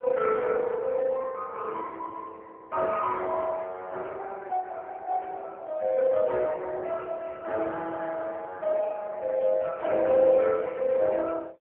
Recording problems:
phone line; 340 Hz to 3.1 kHz, AMR-NB

